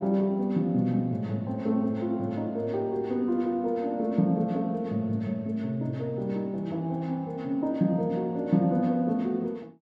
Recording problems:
none

